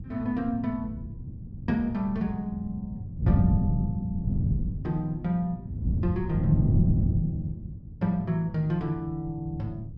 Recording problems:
wind noise; below 170 Hz, SNR -1 dB

